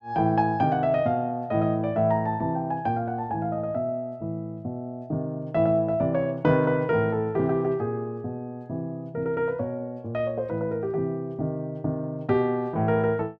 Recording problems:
none

